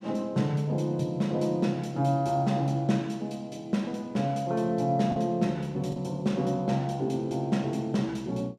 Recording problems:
packet loss; 0.9% of the sound replaced, filled with the last packet

